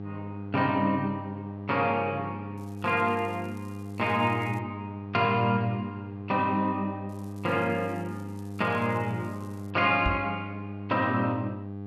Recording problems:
mains hum; 50 Hz, harmonics up to 800 Hz, SNR 10 dB
crackle; from 2.5 to 4.5 s and from 7 to 9.5 s; loose cable, SNR 30 dB
knock on the microphone; at 10 s; peak +2 dB vs average level

